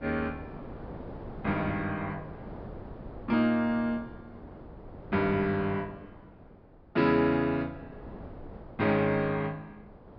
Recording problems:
treble cut off; nothing above 5.5 kHz
wind noise; below 540 Hz, SNR 17 dB

